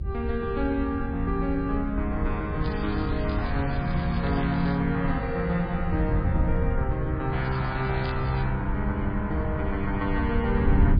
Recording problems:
lossy compression; MP3, log-spectral distance 2 dB, nothing above 4.2 kHz
rumble; below 80 Hz, SNR 9 dB
wind on the microphone; below 110 Hz, SNR 4 dB
crackle; from 2.5 to 5 s and at 7.5 s; loose cable, SNR 17 dB

